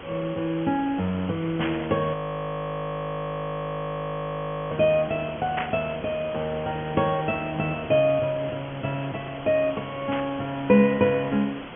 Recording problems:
low-pass filter; nothing above 3.3 kHz
hiss; SNR 14 dB
static burst; at 1.5 s, at 5.5 s and at 10 s; peak 0 dB vs average level
frozen audio; at 2 s for 2.5 s

